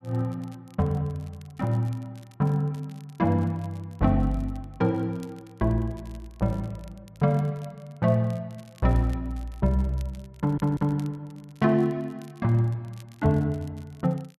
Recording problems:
crackling; vinyl, SNR 30 dB
audio stuttering; at 10 s

